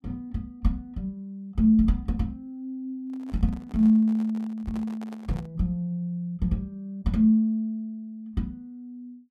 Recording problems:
handling noise; from 3 to 5.5 s; peak -12 dB vs average level

